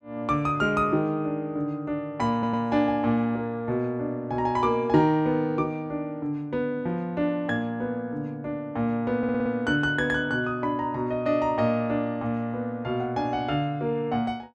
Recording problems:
audio stuttering; at 2.5 s and at 9 s

